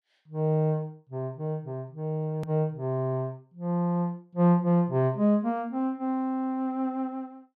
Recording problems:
hard cut with a click; at 2.5 s

